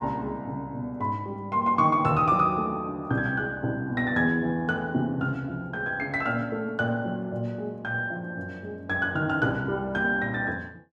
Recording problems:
none

